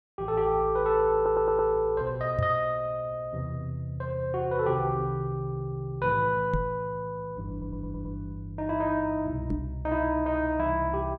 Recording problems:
audio stuttering; at 1 s and at 7.5 s
knock on the microphone; at 2.5 s, at 6.5 s and at 9.5 s; peak +2 dB vs average level

